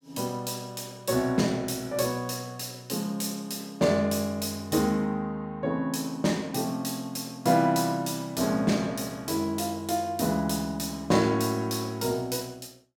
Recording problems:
none

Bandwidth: 17 kHz